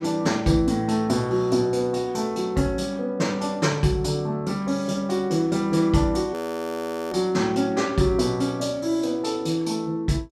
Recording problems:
frozen audio; at 6.5 s for 1 s

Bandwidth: 14.5 kHz